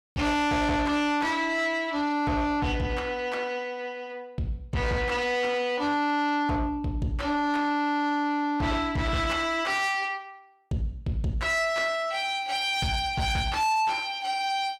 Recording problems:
distortion; soft clipping, signal-to-distortion ratio 6 dB

